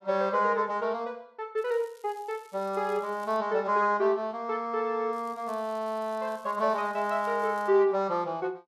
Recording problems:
crackling; from 1.5 to 3.5 s and from 5 to 7.5 s; loose cable, SNR 29 dB

